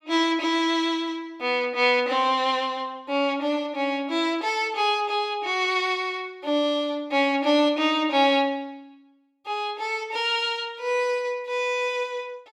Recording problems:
none

